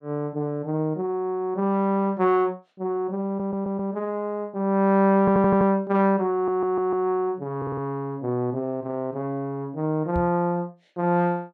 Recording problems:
stutter; 4 times, first at 3.5 s
microphone thump; at 10 s; peak -2 dB vs average level

